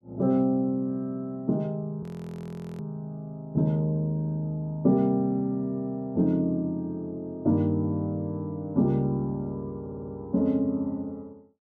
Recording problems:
frozen audio; at 2 s for 1 s
stutter; at 10 s

